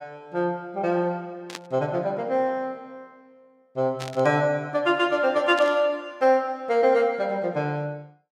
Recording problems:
static burst; at 1.5 s, at 4 s and at 5.5 s; peak -6 dB vs average level

